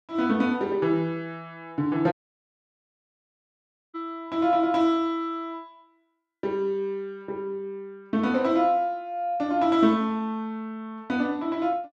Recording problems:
dropout; at 2 s for 2 s

